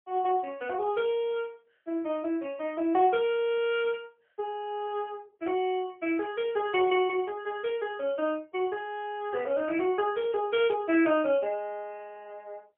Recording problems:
phone line; 280 Hz to 3.3 kHz, AMR-NB, then MP3

